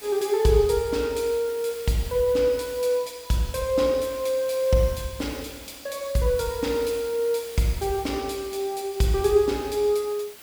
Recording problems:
hiss; slope -1 dB per octave, SNR 18 dB

